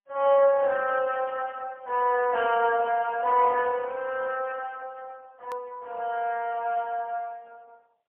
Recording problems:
telephone audio; 300 Hz to 3.1 kHz, AMR-NB, then MP3
edit click; at 5.5 s

